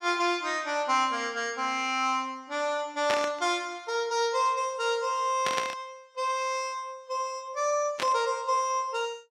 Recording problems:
static burst; at 3 s, at 5.5 s and at 8 s; peak +2 dB vs average level

